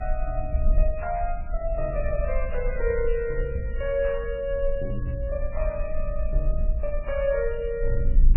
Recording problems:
codec artefacts; MP3, log-spectral distance 2 dB, nothing above 2.4 kHz
wind noise; below 48 Hz, SNR 2 dB

